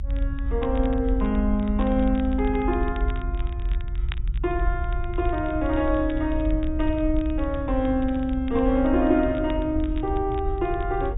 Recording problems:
low-pass filter; nothing above 4 kHz
rumble; below 62 Hz, strongest tone 42 Hz, SNR 5 dB
crackle; vinyl, SNR 24 dB

